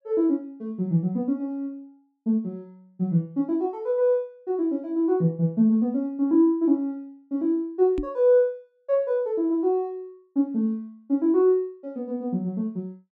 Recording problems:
microphone thump; at 8 s; peak -1 dB vs average level

